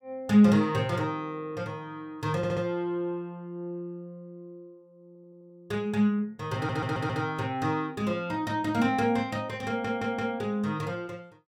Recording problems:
stutter; 4 times, first at 2.5 s

